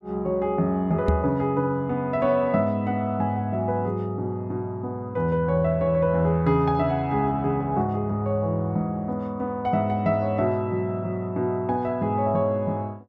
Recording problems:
microphone thump; at 1 s; peak +6 dB vs average level

